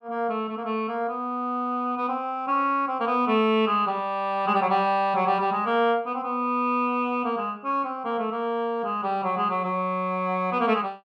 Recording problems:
none

